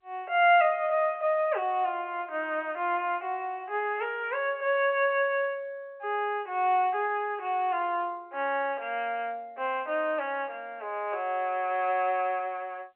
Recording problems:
telephone audio; 340 Hz to 3.1 kHz, G.711

